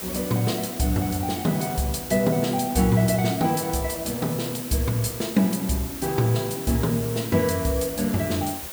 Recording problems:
background hiss; slope -2 dB per octave, SNR 10 dB

